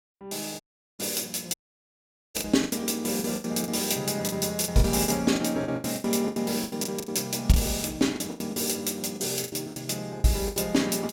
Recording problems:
lost packets; 15% of the sound replaced, filled with the last packet
audio cutting out; at 0.5 s and at 1.5 s for 1 s

